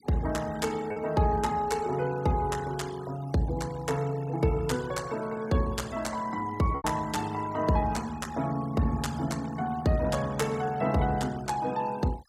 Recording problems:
denoising artefacts; signal-to-artefact ratio 19 dB
lost packets; 1% of the sound replaced, filled with repeated pitch periods

